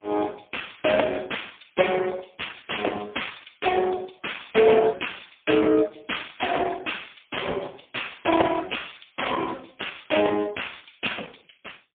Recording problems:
telephone audio; 280 Hz to 3.4 kHz, AMR-NB, then MP3

